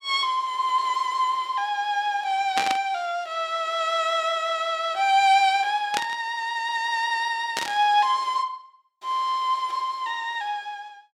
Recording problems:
burst of static; at 2.5 s, at 6 s and at 7.5 s; peak +2 dB vs average level

